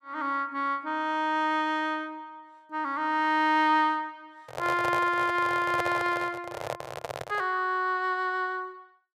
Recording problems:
microphone handling noise; from 4.5 to 7.5 s; peak -1 dB vs average level

